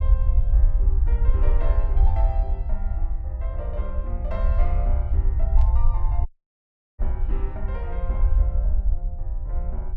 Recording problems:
low-frequency rumble; below 60 Hz, SNR -14 dB
burst of static; at 5.5 s; peak -9 dB vs average level
dropout; at 6.5 s for 0.5 s

